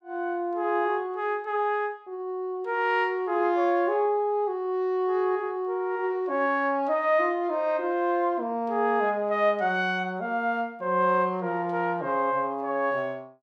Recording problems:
none

